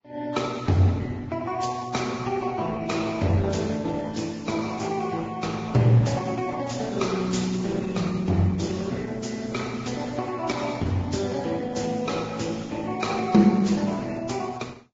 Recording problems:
codec artefacts; Opus, then Vorbis, log-spectral distance 5 dB, nothing above 7.3 kHz

